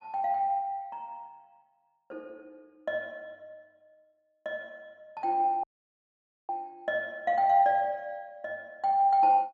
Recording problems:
dropout; at 5.5 s for 1 s

